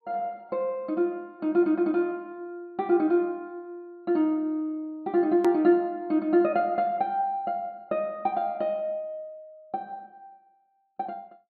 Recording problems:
treble missing; nothing above 4.7 kHz
hard cut with a click; at 5.5 s

